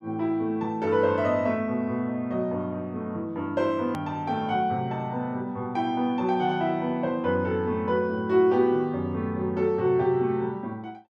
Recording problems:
hard cut with a click; at 4 s

